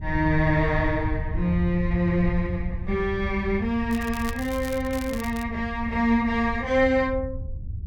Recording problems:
low-frequency rumble; below 96 Hz, SNR 8 dB
crackle; from 4 to 5.5 s; loose cable, SNR 16 dB

